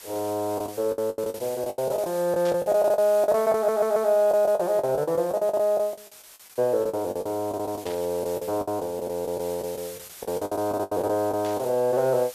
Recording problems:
background hiss; slope +1 dB per octave, SNR 18 dB
packet loss; 18% of the sound replaced, filled with the last packet
burst of static; at 2.5 s, at 8 s and at 11 s; peak -11 dB vs average level
audio stuttering; at 3.5 s

